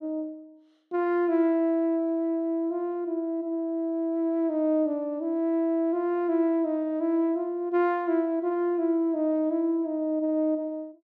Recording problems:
none

